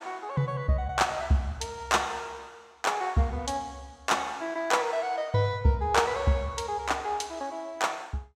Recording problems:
none

